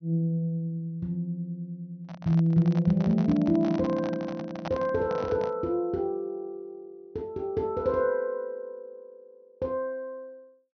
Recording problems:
treble cut off; nothing above 6.1 kHz
microphone handling noise; from 2 to 5.5 s; peak -2 dB vs average level

